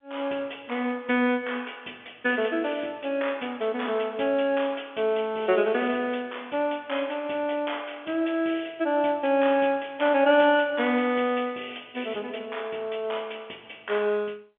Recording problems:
telephone audio; 260 Hz to 3.5 kHz, G.711

